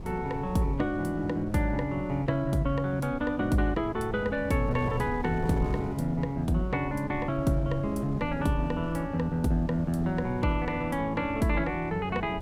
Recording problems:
wind on the microphone; below 250 Hz, SNR 11 dB

